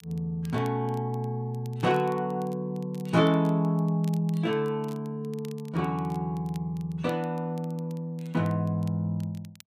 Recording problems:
crackle; vinyl, SNR 27 dB

